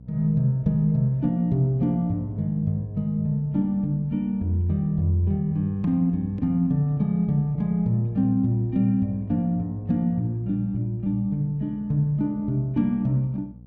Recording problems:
hum; 60 Hz, harmonics up to 540 Hz, SNR 21 dB

